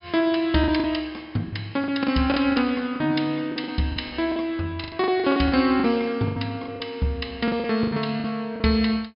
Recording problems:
treble missing; nothing above 5.5 kHz
lost packets; 13% of the sound replaced, filled with the last packet

